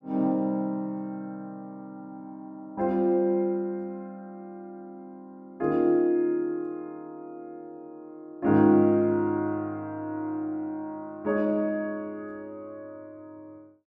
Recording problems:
none

